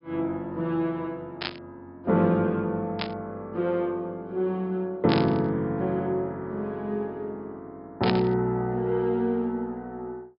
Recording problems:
treble missing; nothing above 5.5 kHz
burst of static; 4 times, first at 1.5 s; peak +3 dB vs average level

